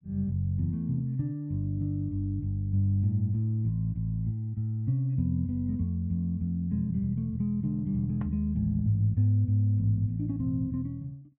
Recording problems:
none

